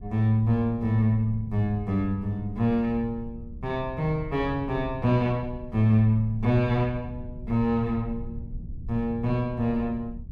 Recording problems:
rumble; below 110 Hz, SNR 14 dB

